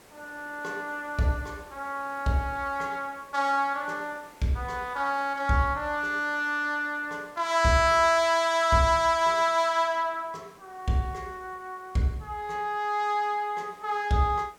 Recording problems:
background hiss; slope -5 dB per octave, SNR 27 dB

